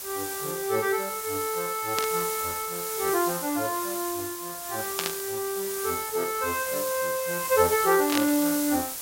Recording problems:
background hiss; slope 0 dB per octave, SNR 4 dB
burst of static; at 2 s, at 5 s and at 8 s; peak +3 dB vs average level

